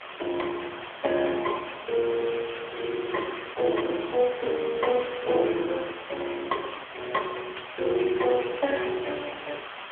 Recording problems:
telephone audio; 320 Hz to 3.2 kHz, AMR-NB
background hiss; SNR 10 dB

